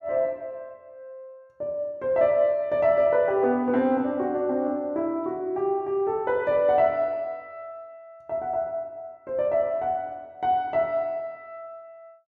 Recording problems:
none

